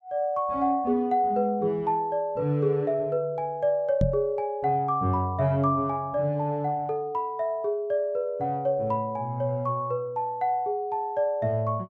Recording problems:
knock on the microphone; at 4 s; peak +5 dB vs average level

